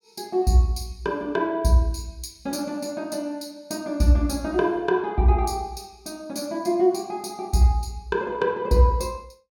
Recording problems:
none

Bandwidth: 17.5 kHz